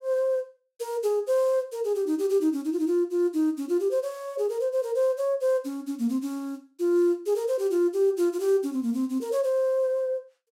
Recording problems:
none

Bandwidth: 16 kHz